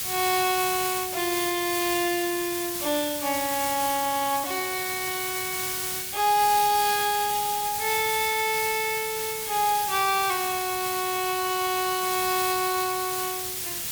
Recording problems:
background hiss; SNR 3 dB

